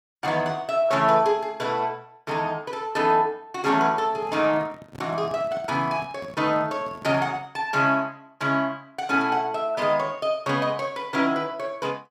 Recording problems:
microphone handling noise; from 4 to 7.5 s; peak -12 dB vs average level

